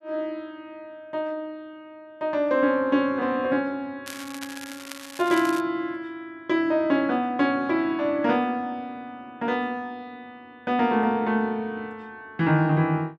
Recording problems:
crackle; from 4 to 5.5 s; loose cable, SNR 14 dB

